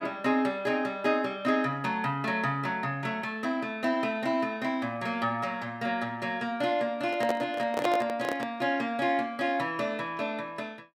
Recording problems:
handling noise; from 7 to 8.5 s; peak +2 dB vs average level

